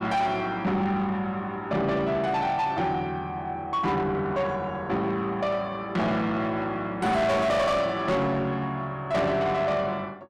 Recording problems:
distorted audio; soft clipping, signal-to-distortion ratio 7 dB

